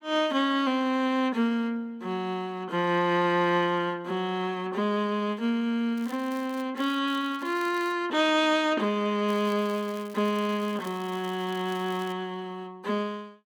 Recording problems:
crackling; 4 times, first at 6 s; loose cable, SNR 23 dB

